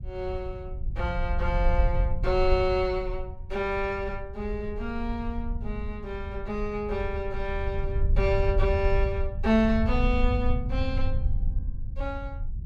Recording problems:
rumble; below 70 Hz, SNR 2 dB

